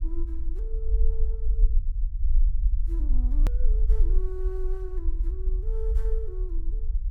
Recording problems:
low-frequency rumble; below 46 Hz, SNR -14 dB
click at an edit; at 3.5 s

